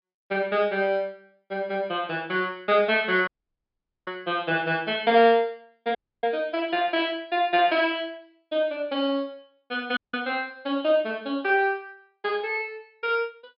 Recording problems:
low-pass filter; nothing above 5.5 kHz
audio cutting out; at 3.5 s for 1 s, at 6 s and at 10 s

